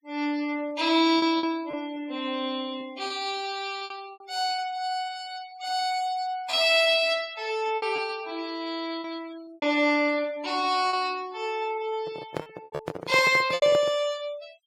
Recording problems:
noise reduction artefacts; signal-to-artefact ratio 23 dB
packet loss; 7% of the sound replaced, filled with repeated pitch periods
handling noise; from 12 to 14 s; peak -1 dB vs average level

